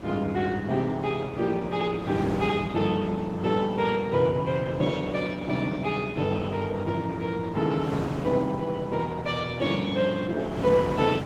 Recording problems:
lossy codec; Opus, log-spectral distance 3 dB
wind noise; below 690 Hz, SNR 12 dB

